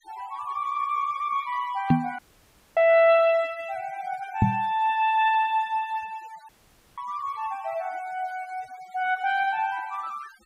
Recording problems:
denoising artefacts; signal-to-artefact ratio 26 dB
knock on the microphone; at 2 s and at 4.5 s; peak +8 dB vs average level
dropout; at 2 s for 0.5 s and at 6.5 s

